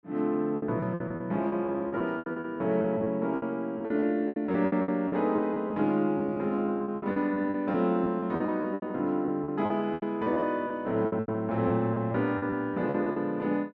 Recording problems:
lost packets; 17% of the sound replaced, filled with repeated pitch periods

